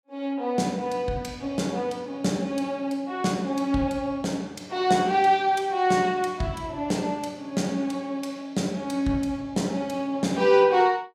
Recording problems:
none

